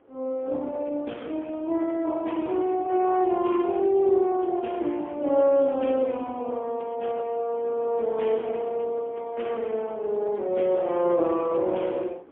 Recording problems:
telephone audio; 240 Hz to 3.4 kHz, AMR-NB, then MP3
wind on the microphone; below 670 Hz, SNR 23 dB

